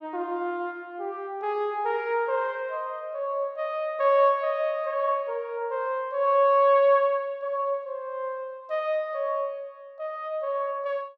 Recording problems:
none

